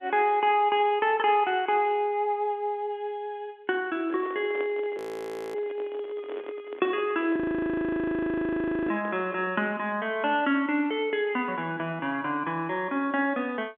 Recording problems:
telephone audio; 240 Hz to 3.7 kHz, G.711
microphone handling noise; from 4 to 9.5 s; peak -6 dB vs average level
audio freezing; at 5 s for 0.5 s and at 7.5 s for 1.5 s

